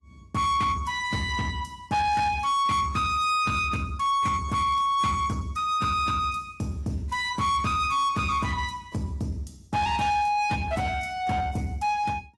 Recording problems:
codec artefacts; AAC, log-spectral distance 2 dB, nothing above 11 kHz
distortion; soft clipping, signal-to-distortion ratio 11 dB

